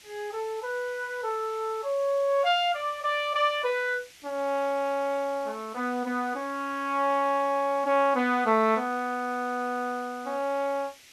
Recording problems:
background hiss; SNR 22 dB

